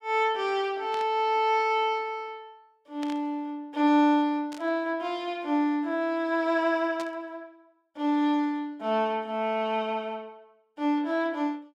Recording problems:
burst of static; 4 times, first at 1 s; peak -10 dB vs average level

